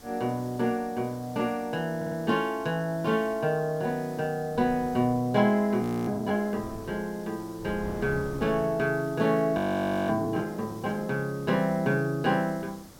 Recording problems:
hiss; SNR 22 dB
wind on the microphone; below 380 Hz, SNR 16 dB
audio stuttering; at 2 s
frozen audio; at 6 s and at 9.5 s for 0.5 s

